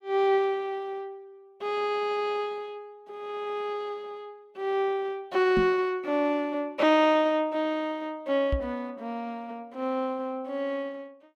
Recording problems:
knock on the microphone; at 5.5 s and at 8.5 s; peak +2 dB vs average level

